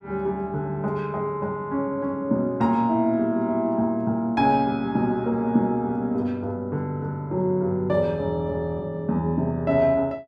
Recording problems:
none

